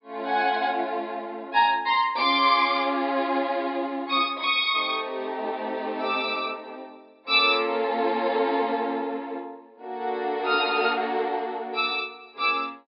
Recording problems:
treble cut off; nothing above 5.1 kHz

